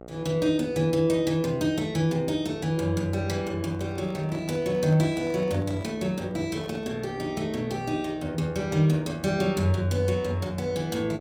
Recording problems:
hum; 60 Hz, harmonics up to 1.5 kHz, SNR 17 dB
microphone handling noise; from 3.5 to 7 s; peak -12 dB vs average level

